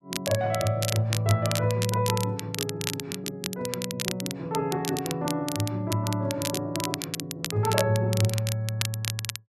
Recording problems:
crackling; vinyl, SNR 5 dB

